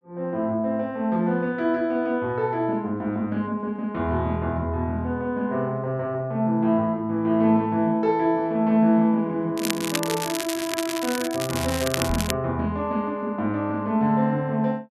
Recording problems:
crackle; from 9.5 to 12 s; loose cable, SNR 6 dB
knock on the microphone; at 12 s; peak -4 dB vs average level

